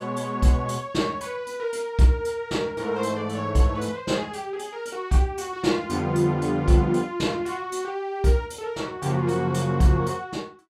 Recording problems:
none

